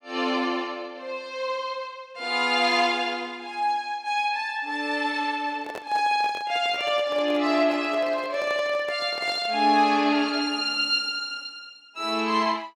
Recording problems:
microphone handling noise; from 5.5 to 9.5 s; peak -8 dB vs average level

